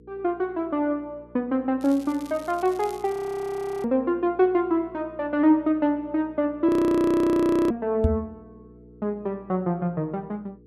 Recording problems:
hum; 60 Hz, harmonics up to 480 Hz, SNR 25 dB
crackling; from 2 to 3 s; loose cable, SNR 24 dB
audio freezing; at 3 s for 0.5 s and at 6.5 s for 1 s
knock on the microphone; at 8 s; peak +5 dB vs average level

